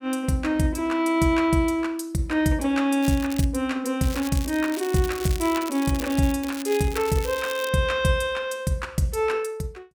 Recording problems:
crackling; at 3 s, from 4 to 6.5 s and from 6.5 to 7.5 s; loose cable, SNR 13 dB

